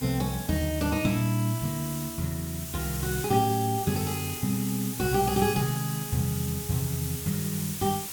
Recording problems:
background hiss; slope 0 dB per octave, SNR 7 dB

